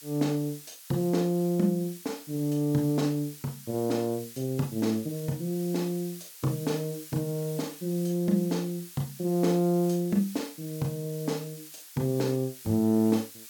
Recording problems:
hiss; slope +5 dB per octave, SNR 15 dB

